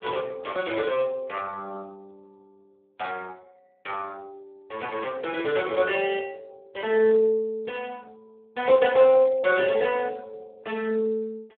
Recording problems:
telephone audio; 280 Hz to 3.3 kHz, Speex

